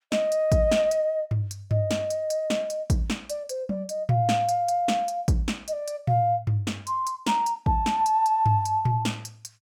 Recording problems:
none

